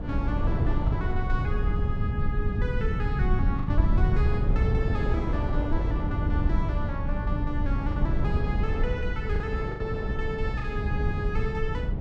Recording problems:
electrical hum; 50 Hz, harmonics up to 800 Hz, SNR 11 dB
low-frequency rumble; below 110 Hz, SNR -6 dB
wind noise; below 580 Hz, SNR 5 dB
packet loss; 3% of the sound replaced, filled with the last packet

